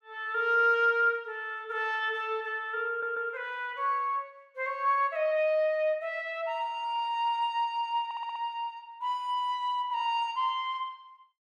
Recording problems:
stutter; at 3 s and at 8 s

